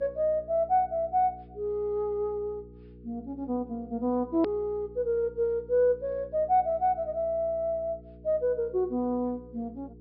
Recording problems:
treble cut off; nothing above 5.5 kHz
hum; 60 Hz, harmonics up to 480 Hz, SNR 21 dB
click at an edit; at 4.5 s

